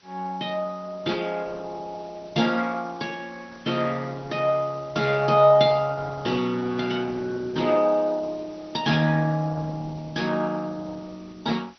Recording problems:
lossy compression; Opus, then MP2, log-spectral distance 7 dB, nothing above 5.8 kHz
hiss; slope +1 dB per octave, SNR 28 dB

